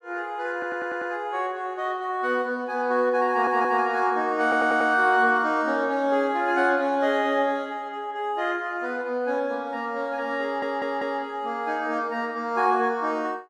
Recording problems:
audio stuttering; 4 times, first at 0.5 s

